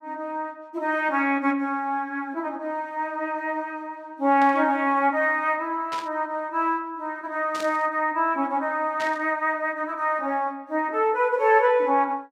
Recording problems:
static burst; 4 times, first at 4.5 s; peak -7 dB vs average level

